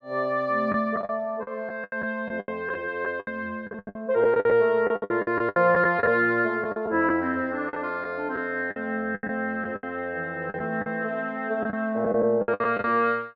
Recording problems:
lost packets; 13% of the sound replaced, filled with the last packet

